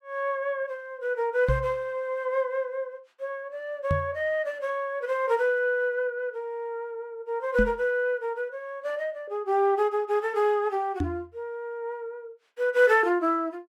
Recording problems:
microphone bump; 4 times, first at 1.5 s; peak +4 dB vs average level

